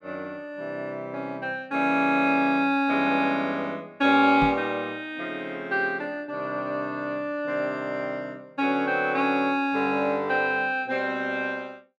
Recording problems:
knock on the microphone; at 4.5 s; peak -2 dB vs average level

